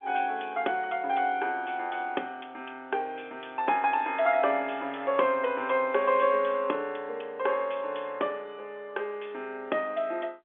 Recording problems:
phone line; 300 Hz to 3.5 kHz, G.711

